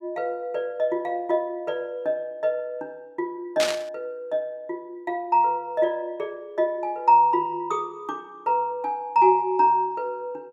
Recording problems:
burst of static; at 3.5 s; peak +2 dB vs average level

